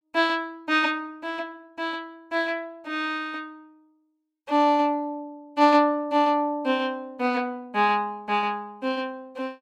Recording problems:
none

